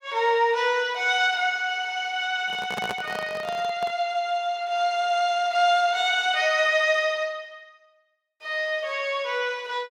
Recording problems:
handling noise; from 2.5 to 4 s; peak -4 dB vs average level

